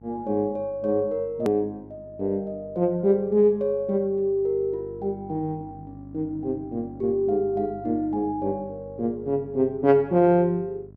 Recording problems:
electrical hum; 50 Hz, harmonics up to 700 Hz, SNR 21 dB
hard cut with a click; at 1.5 s

